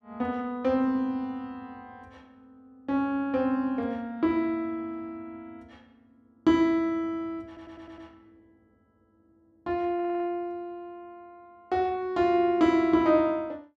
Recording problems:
audio stuttering; at 7.5 s and at 10 s

